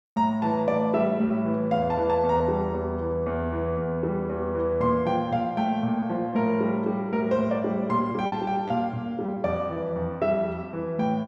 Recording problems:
lost packets; 2% of the sound replaced, filled with repeated pitch periods

